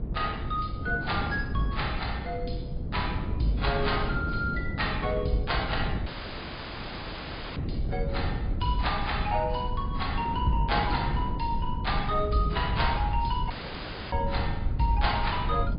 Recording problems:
treble missing; nothing above 4.9 kHz
lossy compression; AAC, log-spectral distance 2 dB
low-frequency rumble; below 78 Hz, SNR 6 dB
wind on the microphone; below 220 Hz, SNR 5 dB
audio cutting out; at 6 s for 1.5 s and at 14 s for 0.5 s

